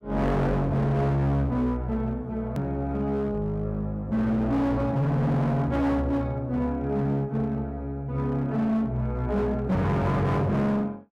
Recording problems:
distortion; hard clipping, signal-to-distortion ratio 8 dB
click at an edit; at 2.5 s

